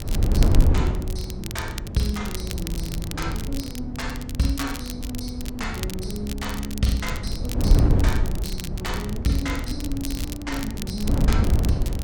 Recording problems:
wind noise; below 110 Hz, SNR -3 dB
crackle; vinyl, SNR 8 dB

